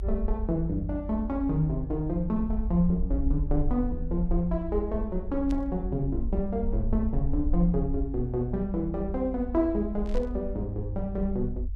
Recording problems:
rumble; below 54 Hz, SNR 5 dB
static burst; at 5.5 s and at 10 s; peak -14 dB vs average level

